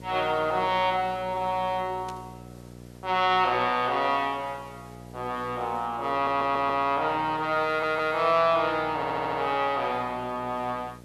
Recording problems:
hum; 60 Hz, harmonics up to 780 Hz, SNR 20 dB
background hiss; slope -3 dB per octave, SNR 30 dB
burst of static; at 2 s; peak -13 dB vs average level
audio stuttering; at 6 s, at 7.5 s and at 9 s

